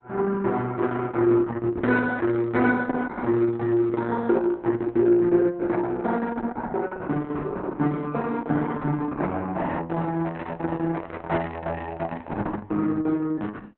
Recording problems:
codec artefacts; Opus, log-spectral distance 3 dB, nothing above 4 kHz

